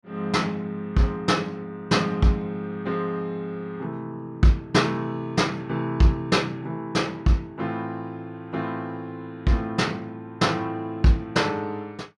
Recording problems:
none

